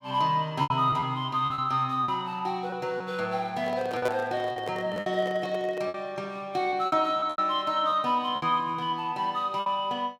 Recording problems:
packet loss; 8% of the sound replaced, filled with repeated pitch periods
microphone handling noise; from 3.5 to 6 s; peak +3 dB vs average level

